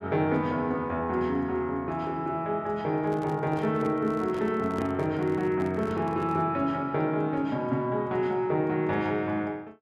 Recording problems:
microphone handling noise; from 3 to 6.5 s; peak -5 dB vs average level

